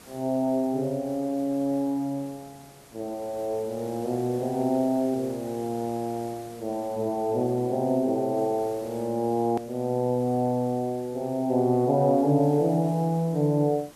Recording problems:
background hiss; slope -4 dB per octave, SNR 22 dB
click at an edit; at 9.5 s

